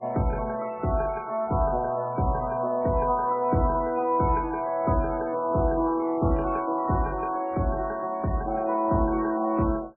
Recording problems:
codec artefacts; MP3, log-spectral distance 3 dB, nothing above 2.4 kHz

